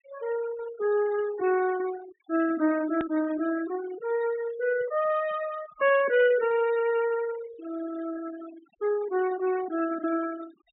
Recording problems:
treble cut off; nothing above 4 kHz
denoising artefacts; signal-to-artefact ratio 15 dB
hard cut with a click; at 3 s

